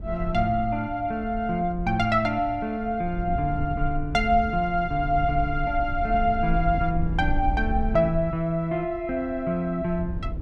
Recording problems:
rumble; below 74 Hz, SNR 8 dB

